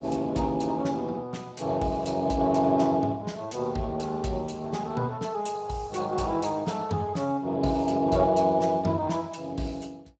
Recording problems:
lossy codec; Speex, log-spectral distance 4 dB, nothing above 7.8 kHz

